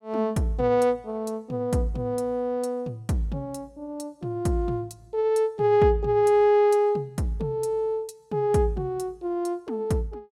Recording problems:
none

